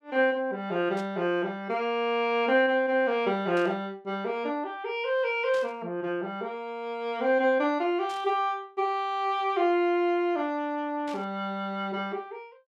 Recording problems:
burst of static; 5 times, first at 1 s; peak -13 dB vs average level

